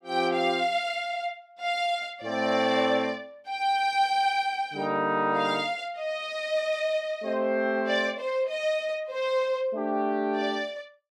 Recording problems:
none

